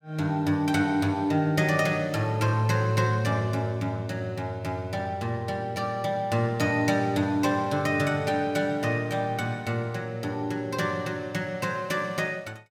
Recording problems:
none

